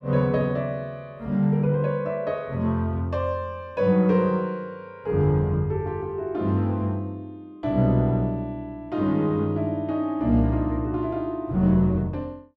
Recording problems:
none

